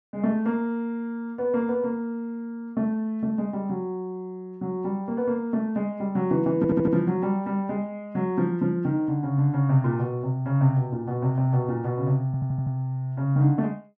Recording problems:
stutter; at 6.5 s and at 12 s

